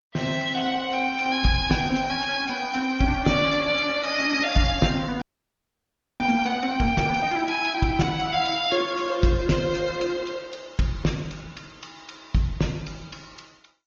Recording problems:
lossy codec; MP2, then Opus, log-spectral distance 5 dB, nothing above 6.7 kHz
audio freezing; at 5 s for 1 s

